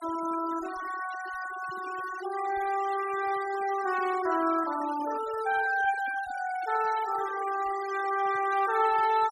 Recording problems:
denoising artefacts; signal-to-artefact ratio 14 dB

